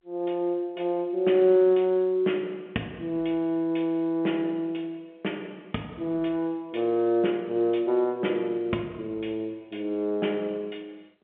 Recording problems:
telephone audio; 220 Hz to 3.3 kHz, G.711

